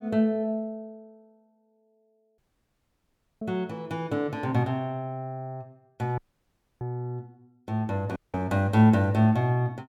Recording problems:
dropout; at 2.5 s for 1 s, at 6 s for 0.5 s and at 8 s

